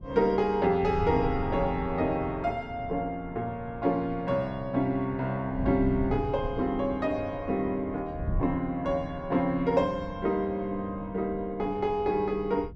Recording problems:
wind on the microphone; below 140 Hz, SNR 12 dB

